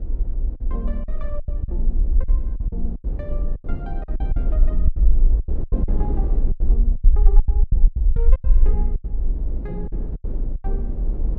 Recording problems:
rumble; below 46 Hz, SNR -15 dB
wind noise; below 320 Hz, SNR -1 dB
lost packets; 15% of the sound replaced, filled with silence

